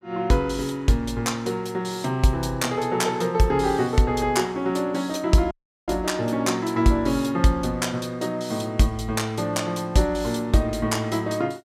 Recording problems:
audio cutting out; at 5.5 s

